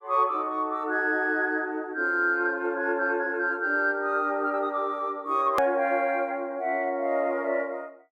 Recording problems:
edit click; at 5.5 s

